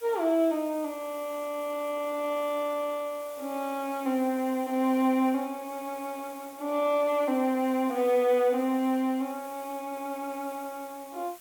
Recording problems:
hiss; slope +1 dB per octave, SNR 20 dB

